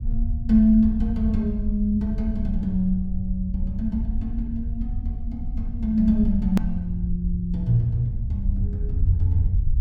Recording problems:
low-frequency rumble; below 74 Hz, SNR 5 dB
click at an edit; at 6.5 s

